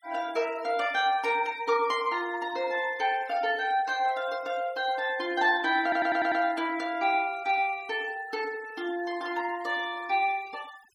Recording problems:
denoising artefacts; signal-to-artefact ratio 21 dB
audio stuttering; at 6 s

